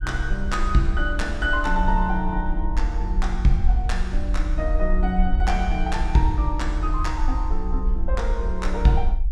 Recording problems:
low-frequency rumble; below 50 Hz, SNR 1 dB

